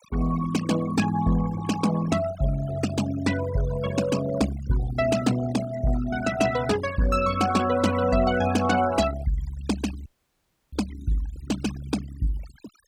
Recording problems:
denoising artefacts; signal-to-artefact ratio 13 dB
audio cutting out; at 10 s for 0.5 s

